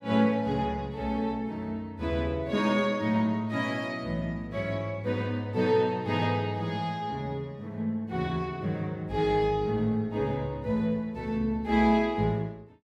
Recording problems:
none

